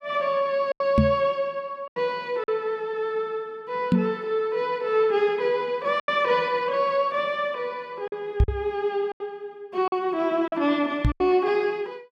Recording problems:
packet loss; 5% of the sound replaced, filled with silence
knock on the microphone; 4 times, first at 1 s; peak +9 dB vs average level

